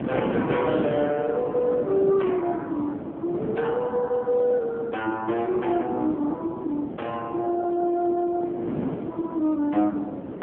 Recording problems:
telephone audio; 190 Hz to 3.4 kHz, AMR-NB
wind noise; below 480 Hz, SNR 7 dB

